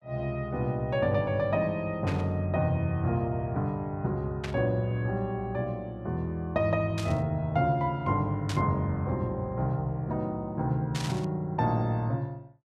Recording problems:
burst of static; 5 times, first at 2 s; peak -4 dB vs average level

